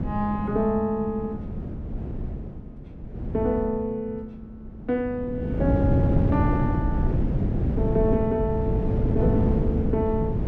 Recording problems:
wind on the microphone; below 220 Hz, SNR -1 dB

